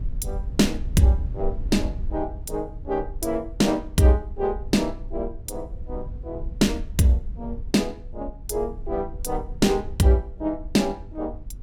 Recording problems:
rumble; below 64 Hz, SNR 11 dB

